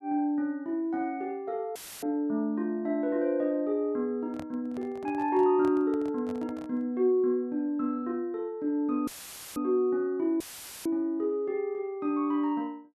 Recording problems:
audio cutting out; at 2 s, at 9 s and at 10 s; filled with static
handling noise; from 4.5 to 7 s; peak -9 dB vs average level

